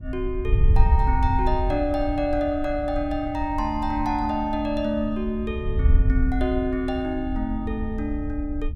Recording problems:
wind on the microphone; below 74 Hz, SNR 2 dB

